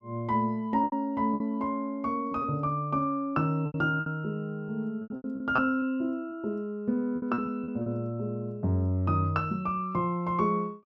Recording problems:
packet loss; 7% of the sound replaced, filled with repeated pitch periods

